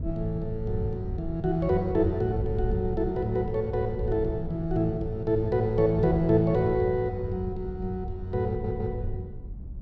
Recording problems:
wind on the microphone; below 98 Hz, SNR 9 dB
stutter; at 8.5 s

